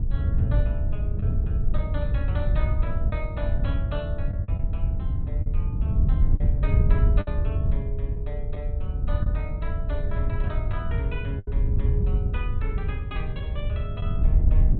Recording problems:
treble missing; nothing above 4 kHz
rumble; below 54 Hz, SNR 1 dB
wind noise; below 94 Hz, SNR -11 dB
packet loss; 3% of the sound replaced, filled with the last packet

